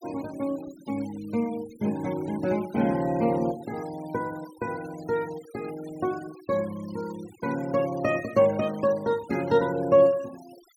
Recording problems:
denoising artefacts; signal-to-artefact ratio 21 dB

